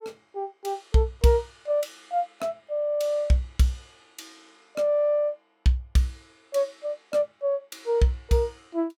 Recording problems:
none

